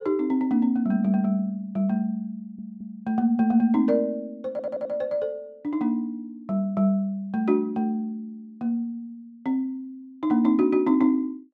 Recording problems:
audio stuttering; at 2.5 s and at 4.5 s

